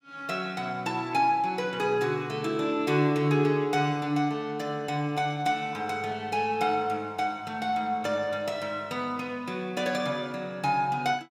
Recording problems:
none

